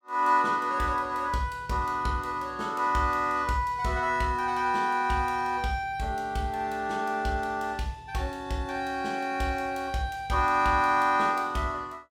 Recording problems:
none

